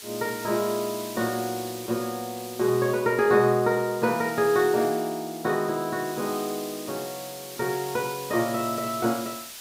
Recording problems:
background hiss; slope +2 dB per octave, SNR 12 dB

